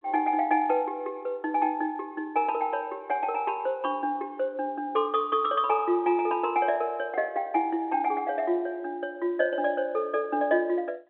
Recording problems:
phone line; 260 Hz to 3.7 kHz, G.711

